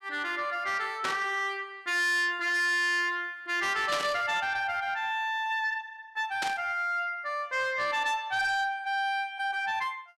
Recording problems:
distorted audio; soft clipping, signal-to-distortion ratio 10 dB
burst of static; at 1 s, at 4 s and at 6.5 s; peak +1 dB vs average level

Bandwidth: 14 kHz